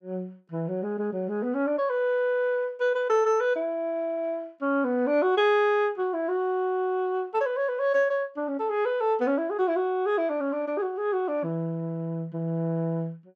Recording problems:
none

